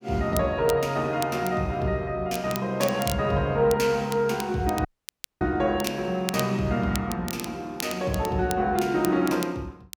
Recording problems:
crackling; vinyl, SNR 13 dB
dropout; at 5 s for 0.5 s

